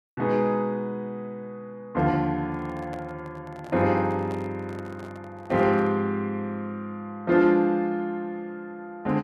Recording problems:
handling noise; from 2.5 to 6 s; peak -11 dB vs average level

